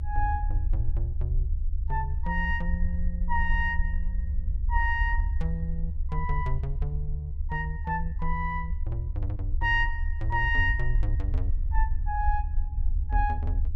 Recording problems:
low-frequency rumble; below 72 Hz, SNR 0 dB

